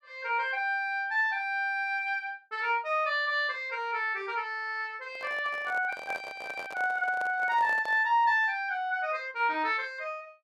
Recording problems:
handling noise; from 5 to 8 s; peak -7 dB vs average level

